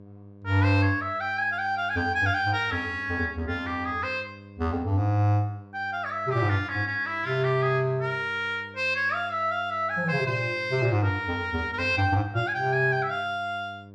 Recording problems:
hum; 50 Hz, harmonics up to 1 kHz, SNR 21 dB

